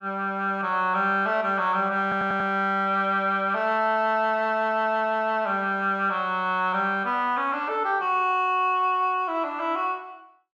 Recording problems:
audio stuttering; at 2 s

